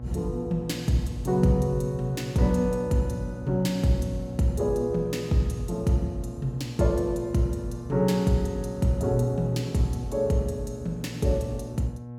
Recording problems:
hum; 60 Hz, harmonics up to 840 Hz, SNR 12 dB

